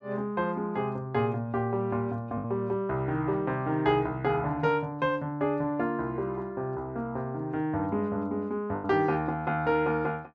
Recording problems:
lost packets; 1.4% of the sound replaced, filled with the last packet

